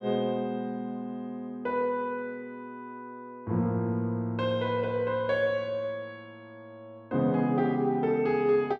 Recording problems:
none

